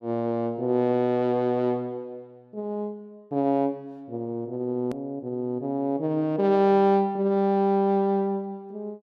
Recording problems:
hard cut with a click; at 5 s

